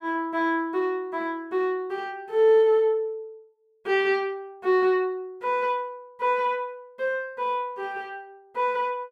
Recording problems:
none

